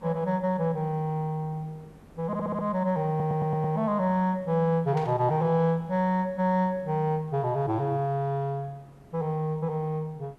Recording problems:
hiss; slope -8 dB per octave, SNR 26 dB
audio stuttering; at 2.5 s and at 3 s
burst of static; at 5 s; peak -12 dB vs average level

